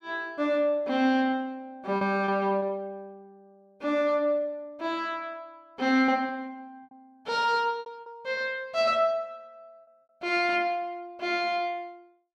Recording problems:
packet loss; 4% of the sound replaced, filled with repeated pitch periods

